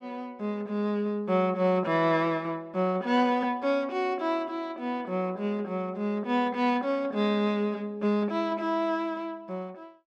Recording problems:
none

